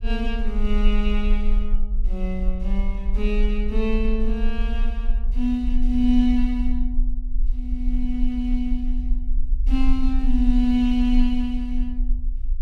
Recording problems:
rumble; below 38 Hz, strongest tone 24 Hz, SNR 1 dB

